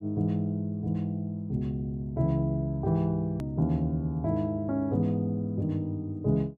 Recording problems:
click at an edit; at 3.5 s

